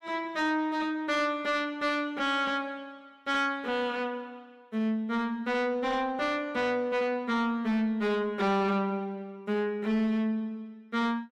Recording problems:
distorted audio; soft clipping, signal-to-distortion ratio 10 dB

